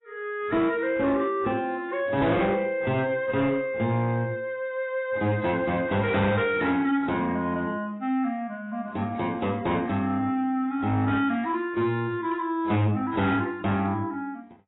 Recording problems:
lossy codec; AAC, log-spectral distance 2 dB, nothing above 3.8 kHz
distortion; soft clipping, signal-to-distortion ratio 11 dB

